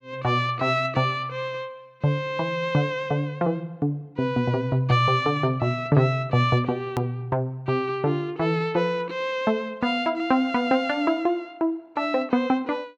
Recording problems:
hard cut with a click; at 7 s

